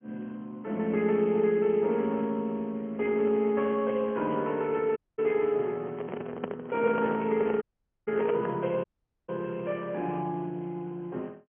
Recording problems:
telephone audio; 150 Hz to 3.3 kHz, Speex
audio cutting out; at 5 s, at 7.5 s and at 9 s
handling noise; from 6 to 8.5 s; peak 0 dB vs average level

